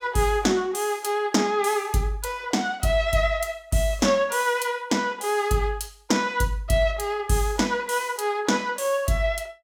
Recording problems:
none

